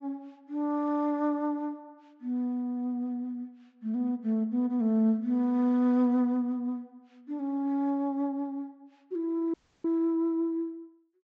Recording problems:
treble cut off; nothing above 8 kHz
dropout; at 9.5 s

